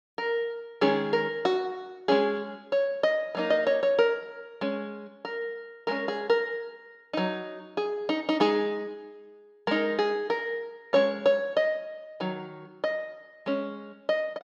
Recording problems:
none

